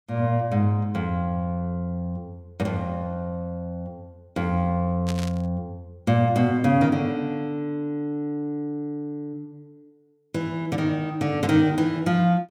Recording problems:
static burst; at 5 s; peak -5 dB vs average level

